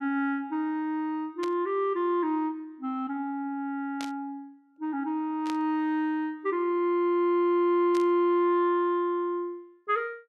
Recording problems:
static burst; 4 times, first at 1.5 s; peak -8 dB vs average level

